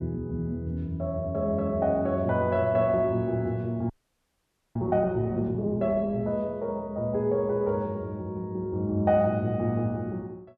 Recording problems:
frozen audio; at 4 s for 1 s

